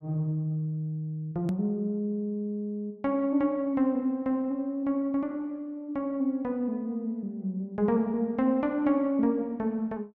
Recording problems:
edit click; at 1.5 s

